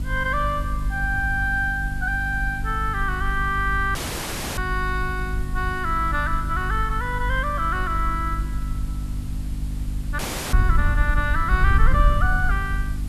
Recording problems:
hum; 50 Hz, harmonics up to 300 Hz, SNR 6 dB
background hiss; slope -3 dB per octave, SNR 21 dB
wind on the microphone; below 64 Hz, SNR 4 dB
audio cutting out; at 4 s for 0.5 s and at 10 s

